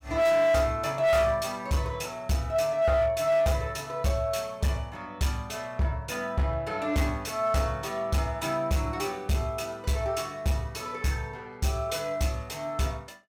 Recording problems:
distortion; hard clipping, signal-to-distortion ratio 10 dB

